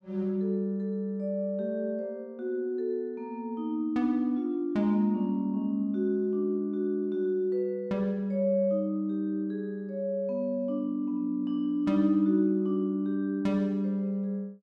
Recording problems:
none

